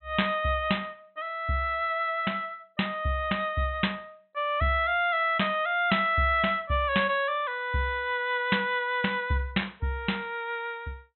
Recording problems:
low-pass filter; nothing above 4 kHz

